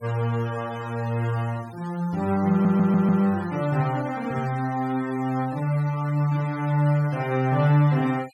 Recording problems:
denoising artefacts; signal-to-artefact ratio 21 dB
stutter; at 2.5 s

